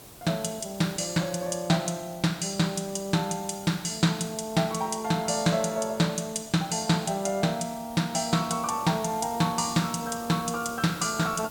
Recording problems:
hiss; SNR 17 dB

